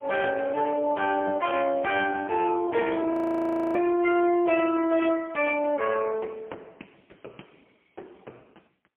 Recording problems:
telephone audio; 280 Hz to 3.1 kHz, AMR-NB, then MP3
audio freezing; at 3 s for 0.5 s

